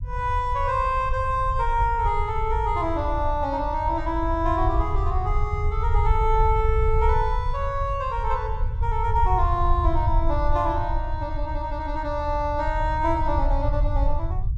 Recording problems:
rumble; below 74 Hz, SNR 2 dB

